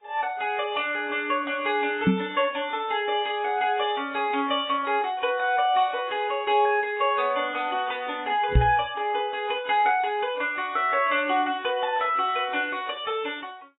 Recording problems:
codec artefacts; AAC, log-spectral distance 3 dB, nothing above 3.6 kHz
microphone thump; at 2 s and at 8.5 s; peak +8 dB vs average level

